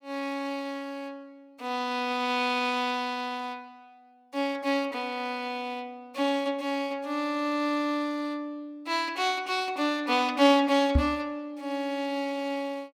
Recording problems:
knock on the microphone; at 11 s; peak +8 dB vs average level

